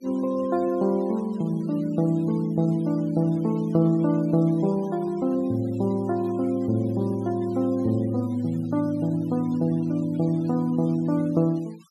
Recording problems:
noise reduction artefacts; signal-to-artefact ratio 26 dB

